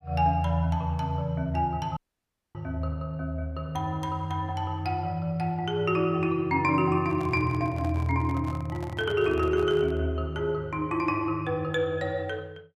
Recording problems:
dropout; at 2 s for 0.5 s
microphone handling noise; from 7 to 10 s; peak -10 dB vs average level

